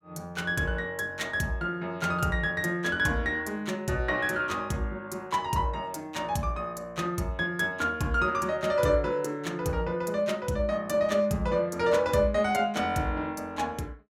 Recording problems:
none

